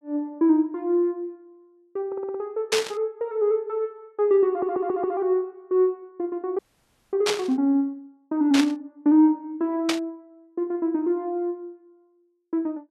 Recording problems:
stutter; at 2 s and at 4.5 s
burst of static; 4 times, first at 2.5 s; peak +4 dB vs average level
frozen audio; at 6.5 s for 0.5 s

